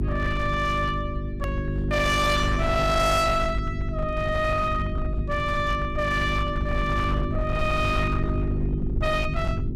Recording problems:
distortion; hard clipping, signal-to-distortion ratio 11 dB
hum; 50 Hz, harmonics up to 400 Hz, SNR 4 dB
rumble; below 120 Hz, SNR 7 dB
edit click; at 1.5 s

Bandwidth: 14.5 kHz